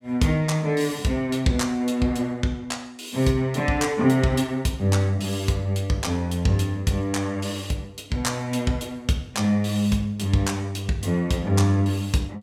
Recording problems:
none

